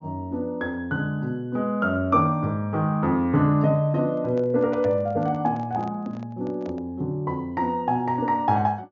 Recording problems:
treble missing; nothing above 7 kHz
handling noise; from 4 to 7 s; peak -10 dB vs average level

